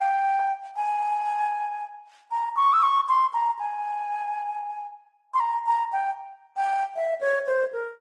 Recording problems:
lossy codec; MP3, then Opus, log-spectral distance 2 dB

